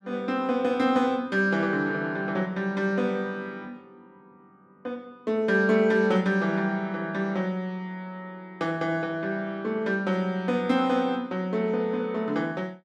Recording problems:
none

